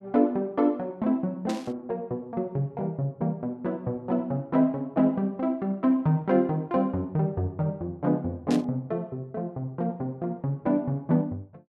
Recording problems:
static burst; at 1.5 s and at 8.5 s; peak -6 dB vs average level

